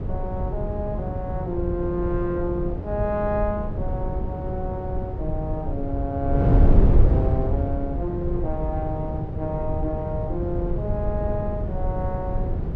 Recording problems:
wind noise; below 120 Hz, SNR -3 dB

